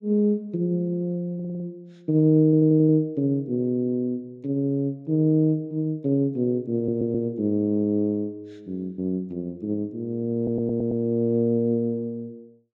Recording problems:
stutter; 4 times, first at 1.5 s

